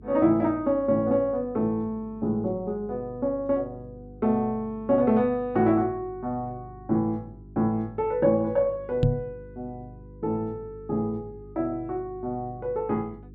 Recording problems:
mains hum; 50 Hz, harmonics up to 400 Hz, SNR 20 dB
knock on the microphone; at 9 s; peak +8 dB vs average level

